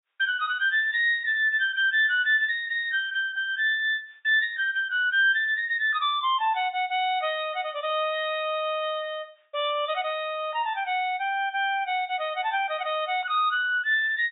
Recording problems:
treble missing; nothing above 4 kHz

